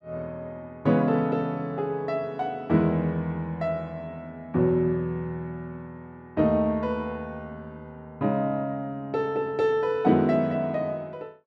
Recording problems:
none

